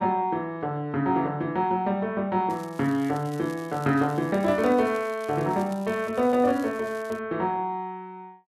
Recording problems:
crackle; from 2.5 to 7 s; loose cable, SNR 24 dB

